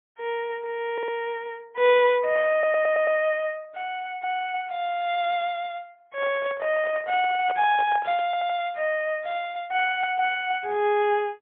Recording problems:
telephone audio; 320 Hz to 3.6 kHz, AMR-NB, then MP3
stutter; at 1 s, at 2.5 s and at 8.5 s
microphone handling noise; from 6 to 8.5 s; peak -6 dB vs average level

